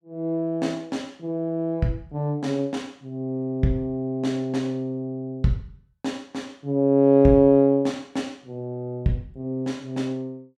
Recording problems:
none

